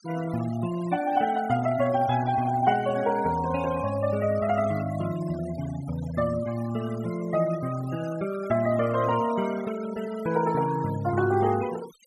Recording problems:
noise reduction artefacts; signal-to-artefact ratio 16 dB

